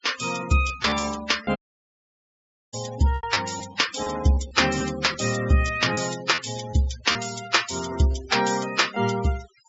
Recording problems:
treble missing; nothing above 8 kHz
denoising artefacts; signal-to-artefact ratio 13 dB
packet loss; 5% of the sound replaced, filled with repeated pitch periods
dropout; at 1.5 s for 1 s

